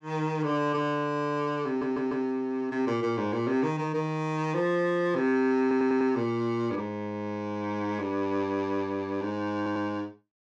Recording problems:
audio stuttering; at 1.5 s, at 5.5 s and at 9.5 s

